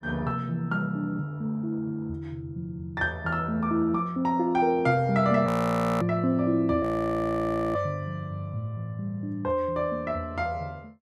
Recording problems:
frozen audio; at 5.5 s for 0.5 s and at 7 s for 1 s

